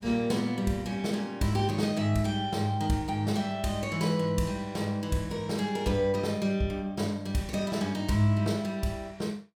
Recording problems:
none

